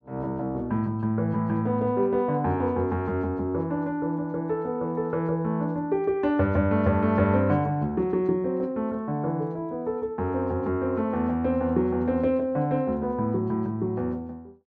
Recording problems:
none

